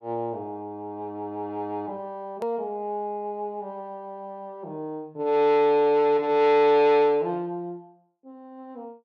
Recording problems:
hard cut with a click; at 2.5 s

